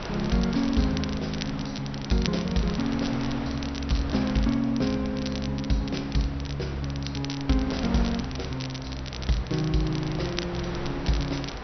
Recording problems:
treble missing; nothing above 6 kHz
wind noise; below 1.3 kHz, SNR 10 dB
crackle; vinyl, SNR 12 dB

